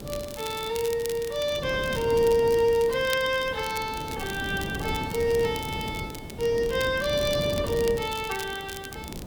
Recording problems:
background hiss; SNR 23 dB
wind on the microphone; below 390 Hz, SNR 11 dB
crackling; vinyl, SNR 15 dB

